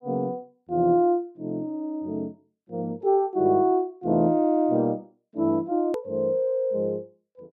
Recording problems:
hard cut with a click; at 6 s

